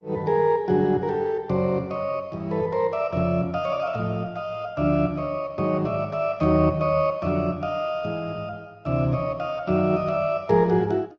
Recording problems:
lossy codec; MP3, then Opus, log-spectral distance 2 dB

